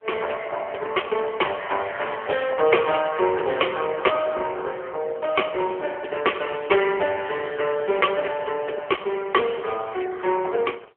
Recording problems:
telephone audio; 320 Hz to 3.2 kHz, AMR-NB

